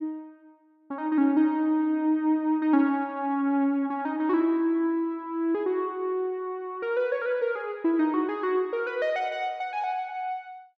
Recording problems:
none

